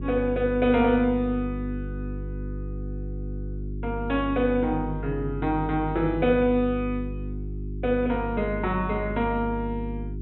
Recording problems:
treble cut off; nothing above 4 kHz
electrical hum; 50 Hz, harmonics up to 400 Hz, SNR 8 dB

